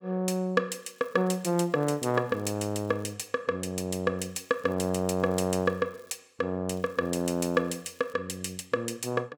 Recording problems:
crackling; from 1 to 3 s, from 4 to 6 s and from 6.5 to 8 s; loose cable, SNR 29 dB

